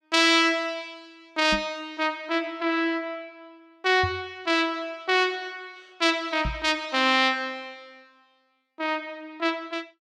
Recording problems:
microphone thump; at 1.5 s, at 4 s and at 6.5 s; peak -3 dB vs average level

